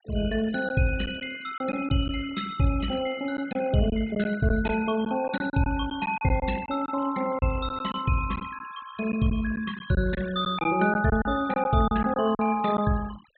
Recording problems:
low-pass filter; nothing above 4 kHz
noise reduction artefacts; signal-to-artefact ratio 15 dB
lost packets; 6% of the sound replaced, filled with silence

